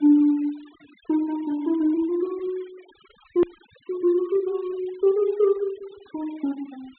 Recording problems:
treble cut off; nothing above 4 kHz
denoising artefacts; signal-to-artefact ratio 27 dB
hard cut with a click; at 3.5 s

